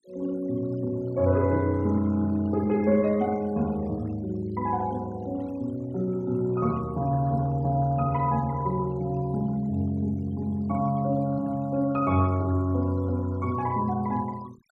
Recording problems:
noise reduction artefacts; signal-to-artefact ratio 25 dB

